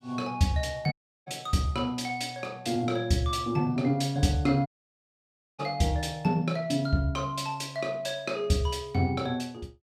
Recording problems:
dropout; at 1 s and at 4.5 s for 1 s

